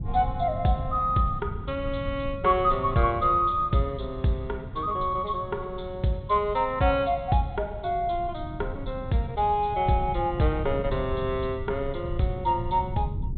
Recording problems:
treble cut off; nothing above 4 kHz
low-frequency rumble; below 130 Hz, SNR 11 dB

